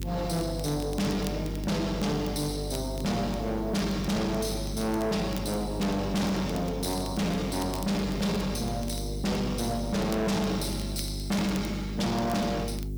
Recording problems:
distortion; soft clipping, signal-to-distortion ratio 6 dB
electrical hum; 50 Hz, harmonics up to 400 Hz, SNR 7 dB
background hiss; SNR 25 dB
crackle; vinyl, SNR 19 dB

